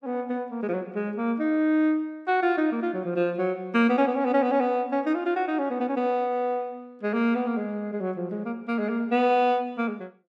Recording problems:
none

